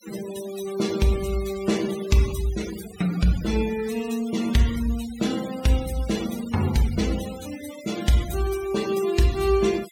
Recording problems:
denoising artefacts; signal-to-artefact ratio 14 dB

